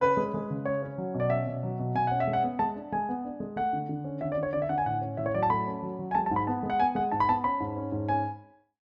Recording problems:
none

